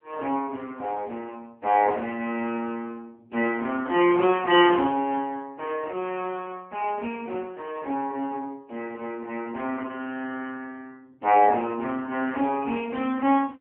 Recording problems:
telephone audio; 240 Hz to 3.3 kHz, AMR-NB

